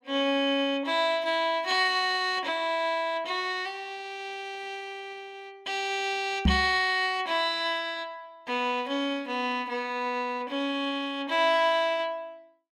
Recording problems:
microphone thump; at 6.5 s; peak +7 dB vs average level

